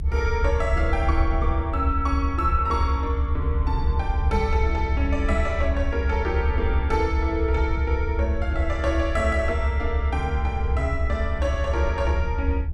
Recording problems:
low-frequency rumble; below 76 Hz, strongest tone 66 Hz, SNR -2 dB

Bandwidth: 12.5 kHz